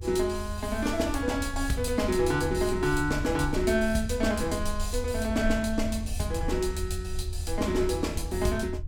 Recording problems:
low-frequency rumble; below 80 Hz, SNR 7 dB

